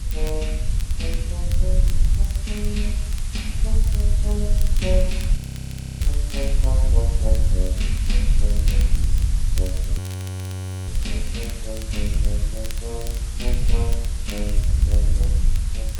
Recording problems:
lossy compression; AAC, log-spectral distance 2 dB
background hiss; slope +1 dB per octave, SNR 5 dB
wind on the microphone; below 66 Hz, SNR -10 dB
crackling; vinyl, SNR 10 dB
audio freezing; at 5.5 s for 0.5 s and at 10 s for 1 s

